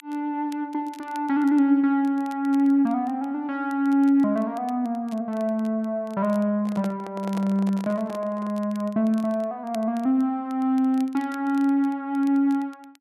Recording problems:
crackling; vinyl, SNR 29 dB
microphone handling noise; from 6.5 to 8.5 s; peak -8 dB vs average level

